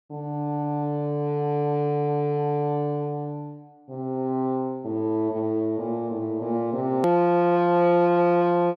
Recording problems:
click at an edit; at 7 s

